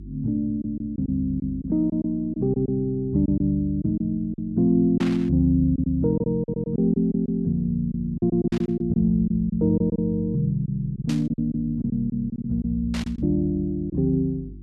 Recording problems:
hum; 50 Hz, harmonics up to 350 Hz, SNR 18 dB
lost packets; 9% of the sound replaced, filled with silence
burst of static; 4 times, first at 5 s; peak -7 dB vs average level

